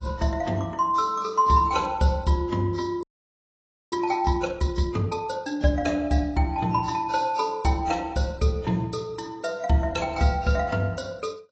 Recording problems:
lossy codec; AAC, log-spectral distance 3 dB, nothing above 7.8 kHz
audio freezing; at 3 s for 1 s

